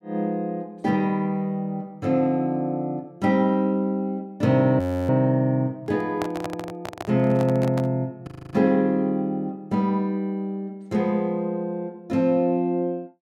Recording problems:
frozen audio; at 5 s and at 8.5 s
microphone handling noise; from 6 to 8 s; peak -3 dB vs average level

